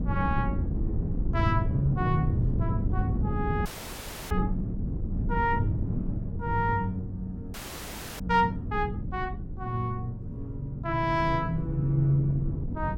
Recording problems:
wind noise; below 180 Hz, SNR 3 dB
audio freezing; at 3.5 s for 0.5 s and at 7.5 s for 0.5 s

